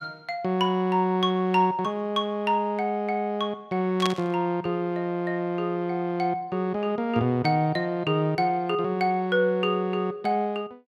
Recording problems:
static burst; at 4 s; peak 0 dB vs average level

